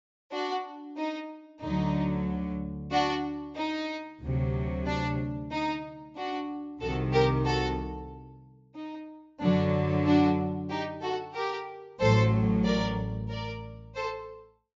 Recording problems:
treble cut off; nothing above 7.4 kHz

